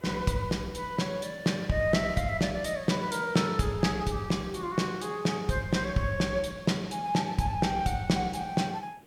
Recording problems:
hiss; SNR 27 dB

